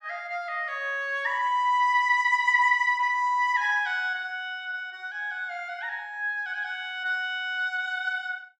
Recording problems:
none

